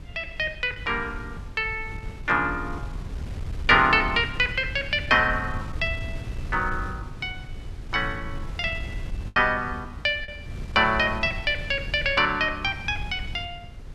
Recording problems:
wind noise; below 110 Hz, SNR 12 dB
lost packets; 0.7% of the sound replaced, filled with the last packet

